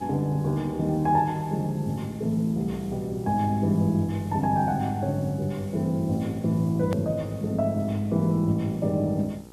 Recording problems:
electrical hum; 60 Hz, harmonics up to 1.4 kHz, SNR 22 dB
background hiss; SNR 27 dB
edit click; at 7 s

